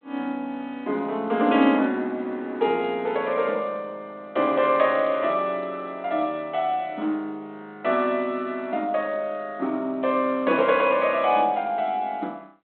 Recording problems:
telephone audio; 220 Hz to 3.5 kHz, G.726

